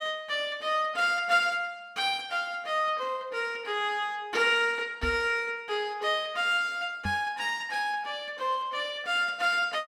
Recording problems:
microphone thump; at 5 s and at 7 s; peak -3 dB vs average level

